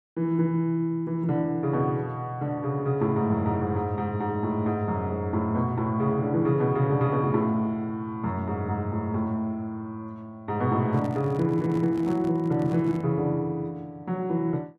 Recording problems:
microphone handling noise; from 11 to 13 s; peak -6 dB vs average level

